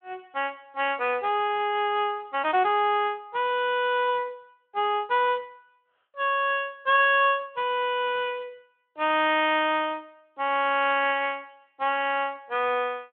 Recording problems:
telephone audio; 280 Hz to 3.4 kHz, Speex

